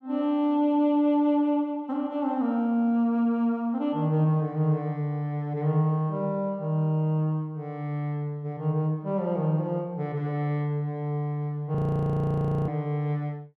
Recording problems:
frozen audio; at 12 s for 1 s

